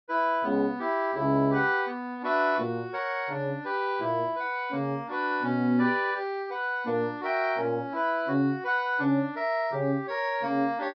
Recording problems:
treble missing; nothing above 5.5 kHz

